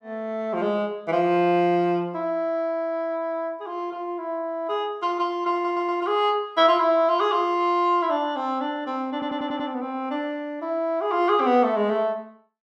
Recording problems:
stutter; at 5.5 s and at 9 s

